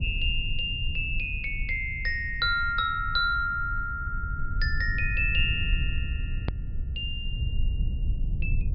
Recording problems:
treble cut off; nothing above 5 kHz
rumble; below 78 Hz, SNR 5 dB
click at an edit; at 6.5 s

